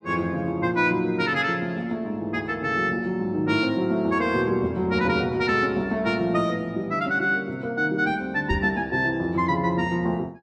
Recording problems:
microphone thump; at 8.5 s; peak 0 dB vs average level

